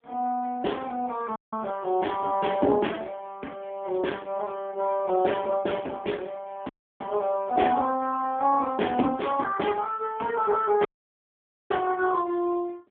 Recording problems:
phone line; 220 Hz to 3.4 kHz, AMR-NB
audio cutting out; at 1.5 s, at 6.5 s and at 11 s for 1 s

